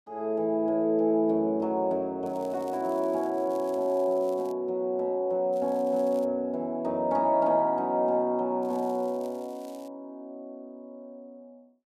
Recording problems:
crackle; from 2.5 to 4.5 s, at 5.5 s and from 8.5 to 10 s; loose cable, SNR 29 dB

